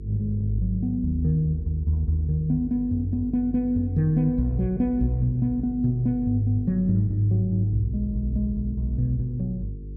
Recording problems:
mains hum; 50 Hz, harmonics up to 450 Hz, SNR 13 dB

